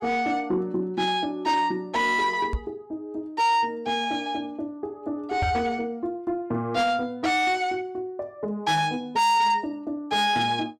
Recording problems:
distortion; soft clipping, signal-to-distortion ratio 11 dB
microphone bump; at 2.5 s and at 5.5 s; peak +1 dB vs average level

